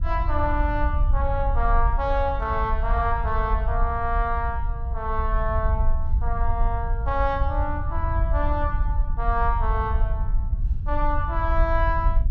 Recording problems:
wind noise; below 64 Hz, SNR -1 dB

